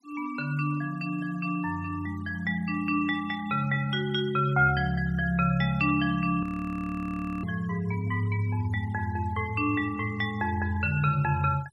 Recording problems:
noise reduction artefacts; signal-to-artefact ratio 21 dB
frozen audio; at 6.5 s for 1 s

